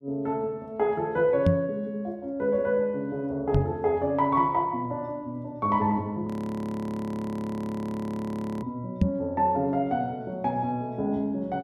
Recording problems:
knock on the microphone; at 1.5 s, at 3.5 s and at 9 s; peak +9 dB vs average level
frozen audio; at 6.5 s for 2.5 s

